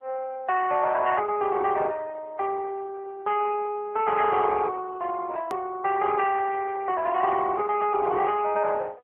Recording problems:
telephone audio; 340 Hz to 2.9 kHz, AMR-NB
edit click; at 5.5 s

